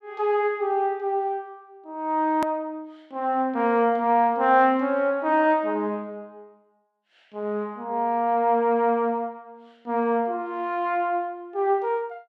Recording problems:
edit click; at 2.5 s

